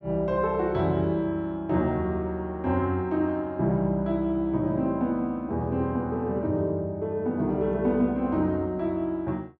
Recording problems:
none

